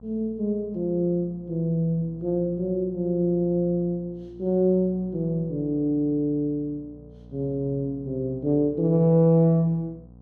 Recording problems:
hum; 60 Hz, harmonics up to 780 Hz, SNR 23 dB

